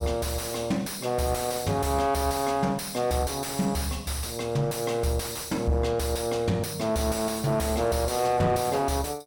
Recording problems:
distorted audio; soft clipping, signal-to-distortion ratio 6 dB

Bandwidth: 17.5 kHz